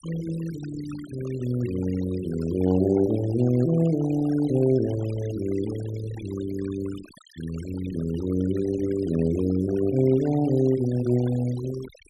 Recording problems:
noise reduction artefacts; signal-to-artefact ratio 17 dB

